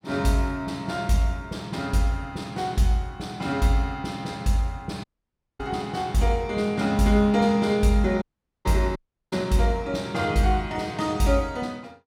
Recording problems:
audio cutting out; at 5 s for 0.5 s, at 8 s and at 9 s

